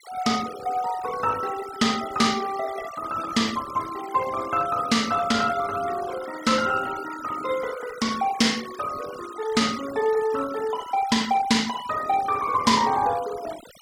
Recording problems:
denoising artefacts; signal-to-artefact ratio 15 dB

